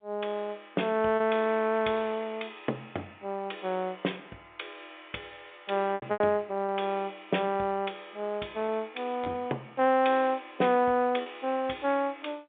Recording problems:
phone line; 300 Hz to 3.6 kHz, G.711
lost packets; 3% of the sound replaced, filled with repeated pitch periods

